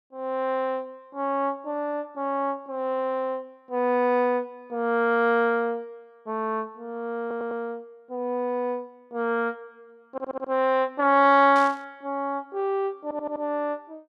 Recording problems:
stutter; at 7 s, at 10 s and at 13 s
burst of static; at 12 s; peak -10 dB vs average level

